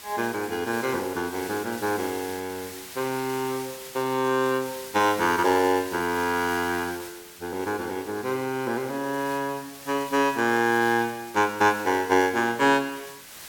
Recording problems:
hiss; slope 0 dB per octave, SNR 15 dB

